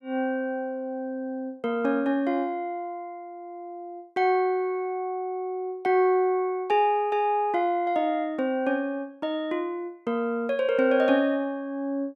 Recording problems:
none

